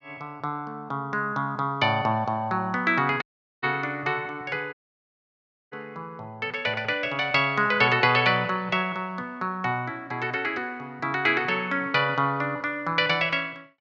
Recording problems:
dropout; at 3 s and at 4.5 s for 1 s

